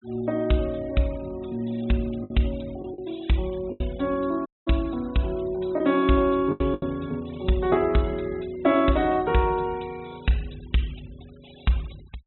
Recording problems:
treble cut off; nothing above 3.9 kHz
noise reduction artefacts; signal-to-artefact ratio 25 dB
lost packets; 3% of the sound replaced, filled with the last packet
audio cutting out; at 4.5 s

